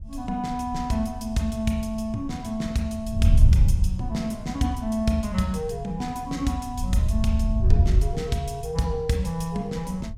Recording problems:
wind on the microphone; below 86 Hz, SNR -4 dB

